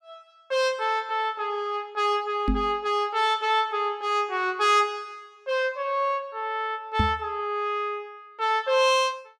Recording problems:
microphone bump; at 2.5 s and at 7 s; peak +4 dB vs average level

